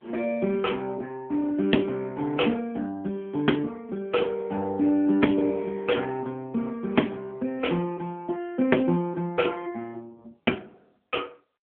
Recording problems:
telephone audio; 170 Hz to 3.4 kHz, AMR-NB

